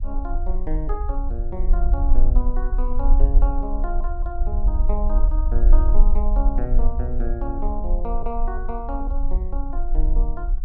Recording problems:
low-frequency rumble; below 40 Hz, strongest tone 24 Hz, SNR -8 dB

